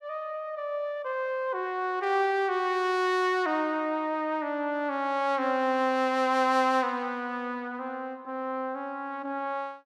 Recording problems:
none

